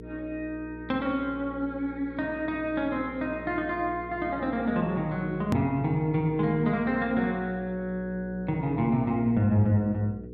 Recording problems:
hum; 60 Hz, harmonics up to 480 Hz, SNR 15 dB
edit click; at 5.5 s

